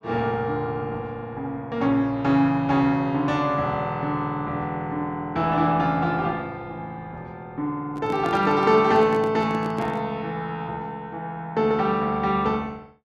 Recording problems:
handling noise; from 8 to 10 s; peak -5 dB vs average level

